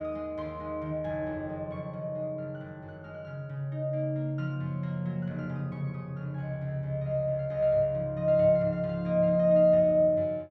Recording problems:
none

